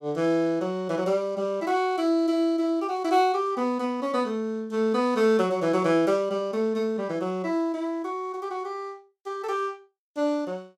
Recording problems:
none

